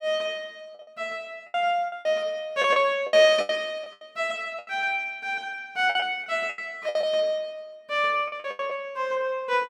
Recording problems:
lost packets; 11% of the sound replaced, filled with the last packet

